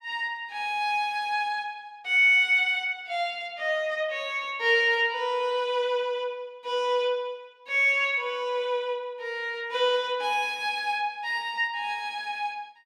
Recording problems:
none

